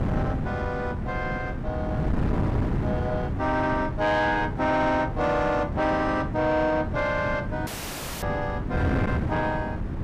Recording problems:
distorted audio; soft clipping, signal-to-distortion ratio 11 dB
wind noise; below 270 Hz, SNR 3 dB
dropout; at 7.5 s for 0.5 s

